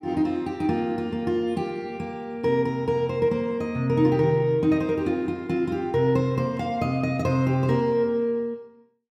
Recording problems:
none

